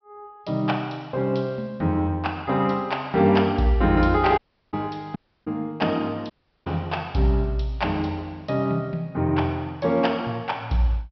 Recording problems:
treble missing; nothing above 5.5 kHz
audio cutting out; at 4.5 s, at 5 s and at 6.5 s

